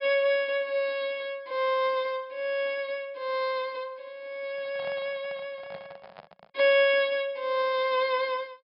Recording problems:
treble cut off; nothing above 5.5 kHz
microphone handling noise; from 4.5 to 6.5 s; peak -13 dB vs average level

